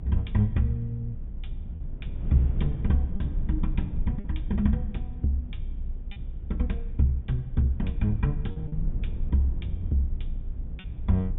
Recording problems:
low-pass filter; nothing above 3.6 kHz
rumble; below 66 Hz, strongest tone 28 Hz, SNR 6 dB
wind noise; below 160 Hz, SNR 17 dB
lost packets; 2% of the sound replaced, filled with repeated pitch periods

